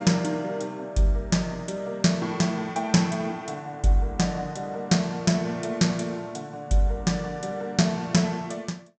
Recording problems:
low-pass filter; nothing above 8 kHz

